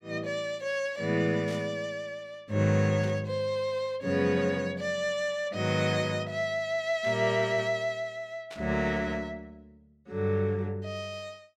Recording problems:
burst of static; 4 times, first at 1.5 s; peak -11 dB vs average level

